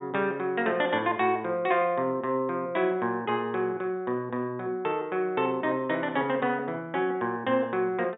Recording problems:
low-pass filter; nothing above 3.7 kHz

